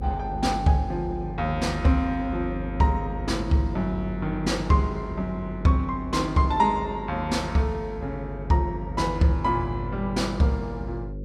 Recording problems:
hum; 50 Hz, harmonics up to 550 Hz, SNR 10 dB

